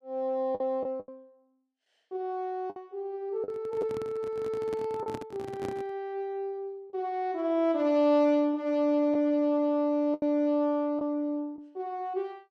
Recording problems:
packet loss; 4% of the sound replaced, filled with the last packet
handling noise; from 3.5 to 6 s; peak -5 dB vs average level

